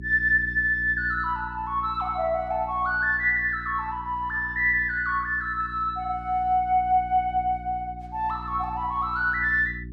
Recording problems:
mains hum; 60 Hz, harmonics up to 360 Hz, SNR 16 dB

